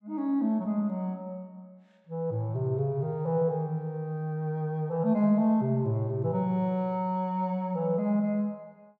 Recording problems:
none

